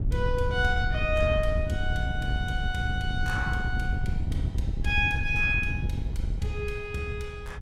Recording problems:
wind noise; below 110 Hz, SNR 1 dB

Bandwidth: 16 kHz